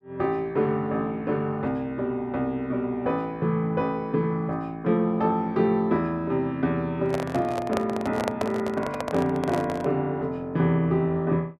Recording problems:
microphone handling noise; from 7 to 10 s; peak +2 dB vs average level

